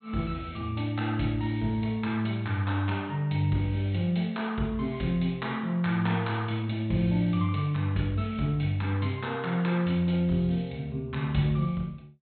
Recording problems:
treble missing; nothing above 4.1 kHz

